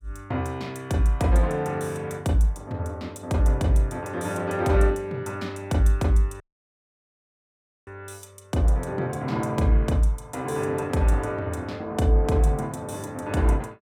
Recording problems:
dropout; at 6.5 s for 1.5 s

